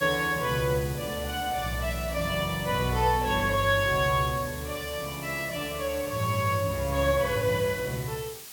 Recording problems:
hiss; slope +1 dB per octave, SNR 13 dB

